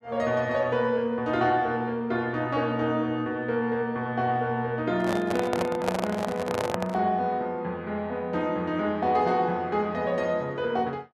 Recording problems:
microphone handling noise; from 5 to 7 s; peak +3 dB vs average level

